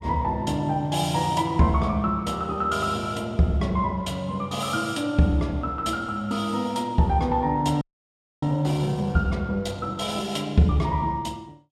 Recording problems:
frozen audio; at 8 s for 0.5 s

